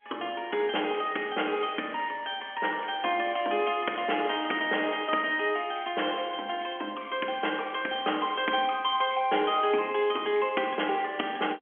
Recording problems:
phone line; 240 Hz to 3.3 kHz, G.711

